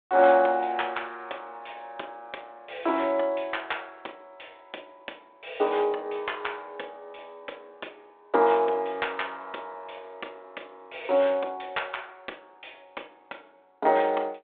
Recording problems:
phone line; 300 Hz to 3.6 kHz, G.726

